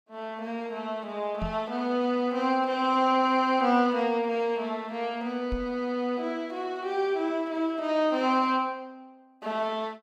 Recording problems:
knock on the microphone; at 1.5 s and at 5.5 s; peak -3 dB vs average level

